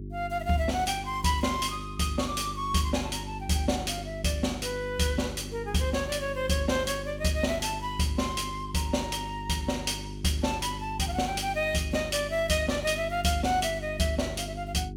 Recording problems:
mains hum; 50 Hz, harmonics up to 400 Hz, SNR 11 dB

